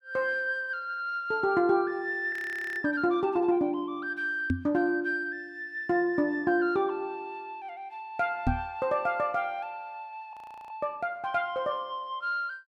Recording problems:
frozen audio; at 2.5 s and at 10 s
microphone bump; at 4.5 s and at 8.5 s; peak +5 dB vs average level

